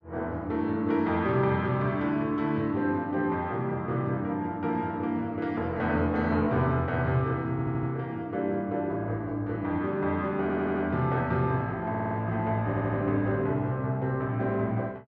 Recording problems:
stutter; 4 times, first at 7.5 s

